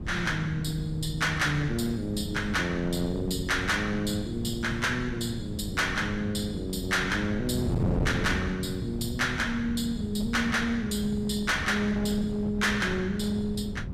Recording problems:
distorted audio; hard clipping, uneven, signal-to-distortion ratio 11 dB
wind noise; below 210 Hz, SNR 7 dB

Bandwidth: 14.5 kHz